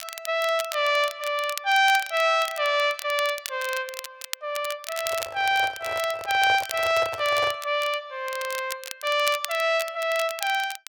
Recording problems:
crackle; vinyl, SNR 12 dB
microphone handling noise; from 5 to 7.5 s; peak -5 dB vs average level

